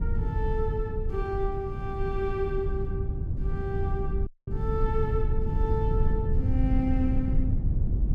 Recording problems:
low-frequency rumble; below 100 Hz, SNR -3 dB
dropout; at 4.5 s

